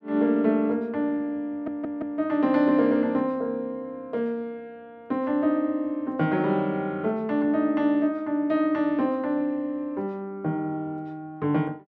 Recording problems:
stutter; at 1.5 s

